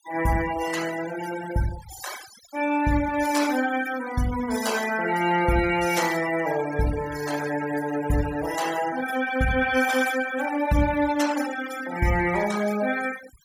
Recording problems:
noise reduction artefacts; signal-to-artefact ratio 12 dB

